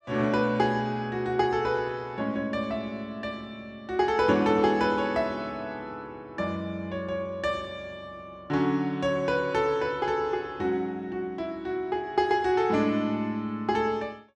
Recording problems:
none

